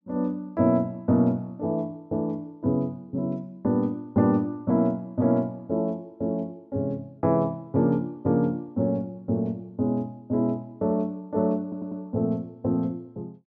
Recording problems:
stutter; at 12 s

